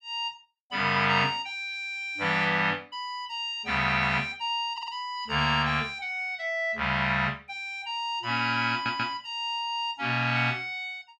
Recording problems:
audio stuttering; at 4.5 s and at 8.5 s

